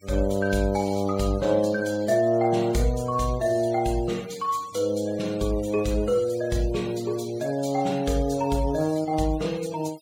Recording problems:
noise reduction artefacts; signal-to-artefact ratio 20 dB

